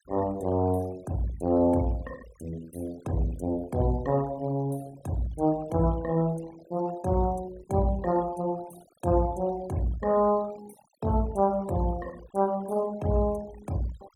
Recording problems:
noise reduction artefacts; signal-to-artefact ratio 22 dB

